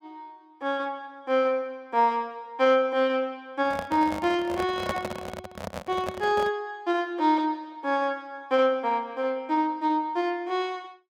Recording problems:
handling noise; from 3.5 to 6.5 s; peak +1 dB vs average level

